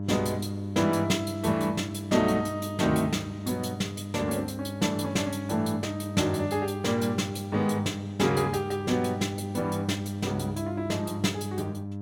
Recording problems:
hum; 50 Hz, harmonics up to 700 Hz, SNR 7 dB

